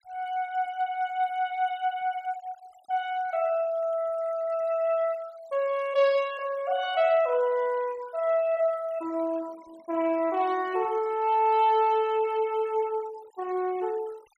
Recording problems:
noise reduction artefacts; signal-to-artefact ratio 23 dB

